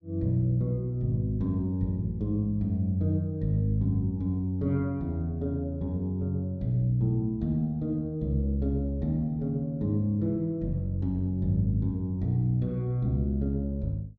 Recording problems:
none

